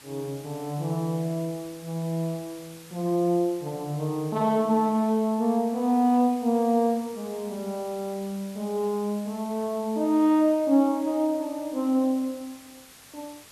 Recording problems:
background hiss; slope 0 dB per octave, SNR 21 dB

